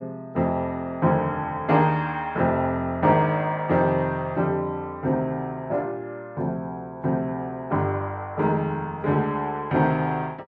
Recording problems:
none

